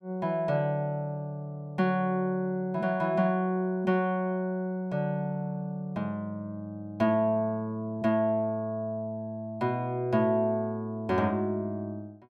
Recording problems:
none

